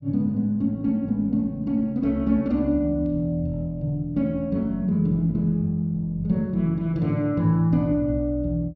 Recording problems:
none

